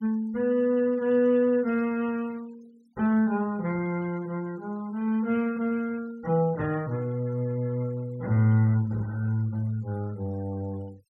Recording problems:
noise reduction artefacts; signal-to-artefact ratio 26 dB

